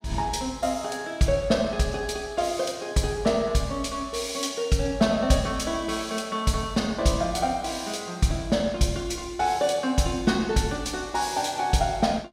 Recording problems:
none

